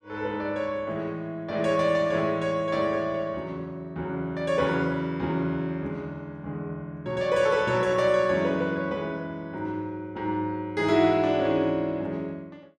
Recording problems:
none

